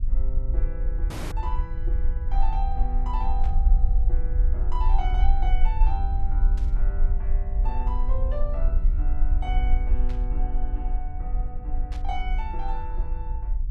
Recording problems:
low-frequency rumble; below 46 Hz, strongest tone 20 Hz, SNR -10 dB
dropout; at 1 s
burst of static; 4 times, first at 3.5 s; peak -5 dB vs average level

